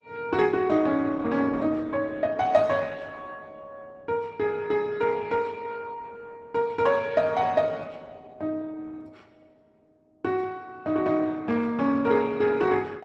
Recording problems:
codec artefacts; Opus, log-spectral distance 3 dB

